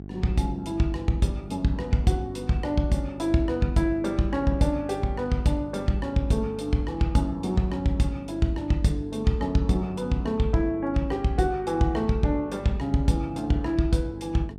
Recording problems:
hum; 50 Hz, harmonics up to 800 Hz, SNR 14 dB

